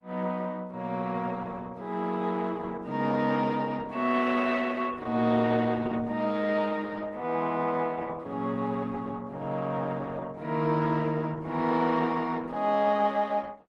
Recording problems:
lossy codec; Opus, log-spectral distance 3 dB

